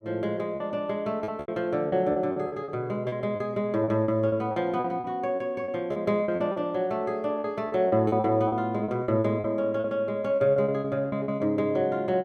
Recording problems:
packet loss; 13% of the sound replaced, filled with repeated pitch periods

